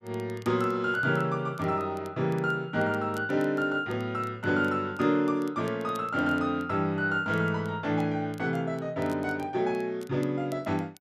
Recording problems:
crackling; vinyl, SNR 28 dB

